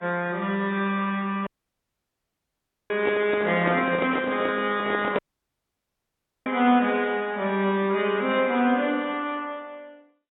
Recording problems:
lossy codec; MP2, then AAC, log-spectral distance 3 dB, nothing above 3.5 kHz
dropout; at 1.5 s for 1.5 s and at 5 s for 1.5 s
handling noise; from 3 to 5 s; peak +1 dB vs average level

